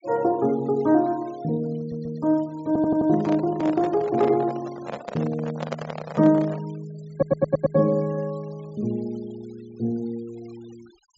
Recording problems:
low-pass filter; nothing above 8 kHz
denoising artefacts; signal-to-artefact ratio 25 dB
stutter; at 2 s, at 2.5 s and at 7 s
handling noise; from 2.5 to 6.5 s; peak -2 dB vs average level

